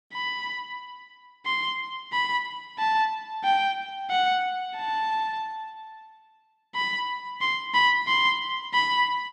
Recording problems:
none

